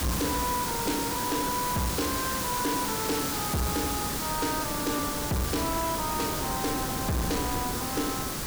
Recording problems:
distorted audio; hard clipping, signal-to-distortion ratio 11 dB
background hiss; slope -2 dB per octave, SNR 0 dB
wind on the microphone; below 440 Hz, SNR 9 dB

